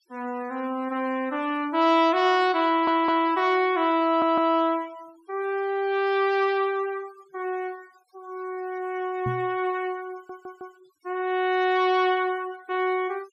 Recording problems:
denoising artefacts; signal-to-artefact ratio 26 dB
audio stuttering; at 2.5 s, at 4 s and at 10 s
microphone thump; at 9.5 s; peak -3 dB vs average level

